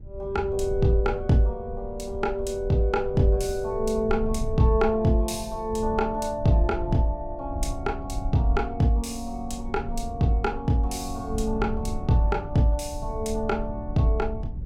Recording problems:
low-frequency rumble; below 80 Hz, SNR 10 dB

